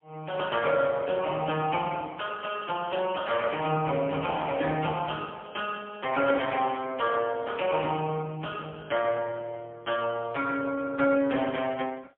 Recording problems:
phone line; 190 Hz to 3.4 kHz, AMR-NB, then MP3

